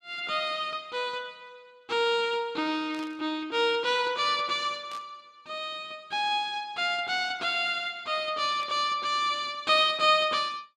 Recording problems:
static burst; at 3 s, at 5 s and at 8.5 s; peak -14 dB vs average level

